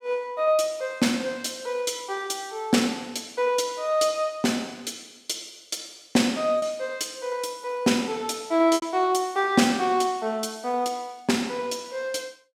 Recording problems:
lost packets; 1.2% of the sound replaced, filled with repeated pitch periods

